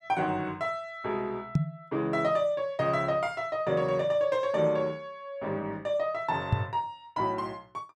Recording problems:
microphone bump; at 1.5 s and at 6.5 s; peak +8 dB vs average level

